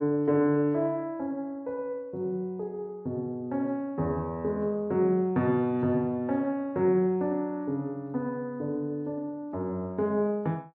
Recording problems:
none

